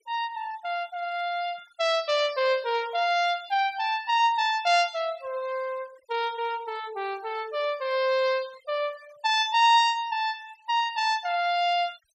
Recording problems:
noise reduction artefacts; signal-to-artefact ratio 24 dB

